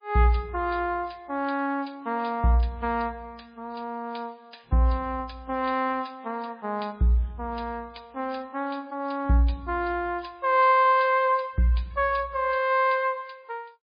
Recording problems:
lossy codec; MP3, log-spectral distance 4 dB

